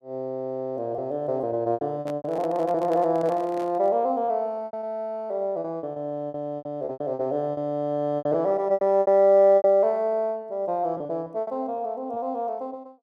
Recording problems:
lost packets; 11% of the sound replaced, filled with repeated pitch periods
handling noise; from 2 to 4 s; peak -9 dB vs average level

